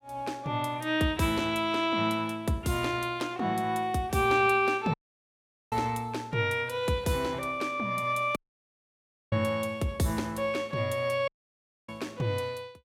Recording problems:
dropout; at 5 s for 1 s, at 8.5 s for 1 s and at 11 s for 0.5 s

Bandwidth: 16.5 kHz